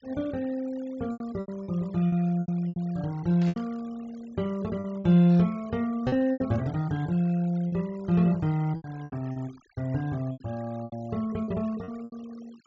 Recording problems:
treble missing; nothing above 8 kHz
denoising artefacts; signal-to-artefact ratio 24 dB
packet loss; 10% of the sound replaced, filled with repeated pitch periods
static burst; at 3.5 s; peak -15 dB vs average level

